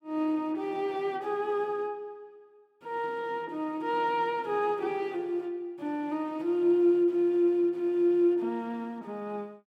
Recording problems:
none

